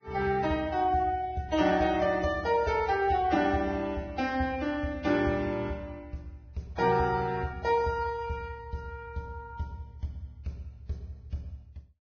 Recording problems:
codec artefacts; Vorbis, log-spectral distance 2 dB, nothing above 5.3 kHz

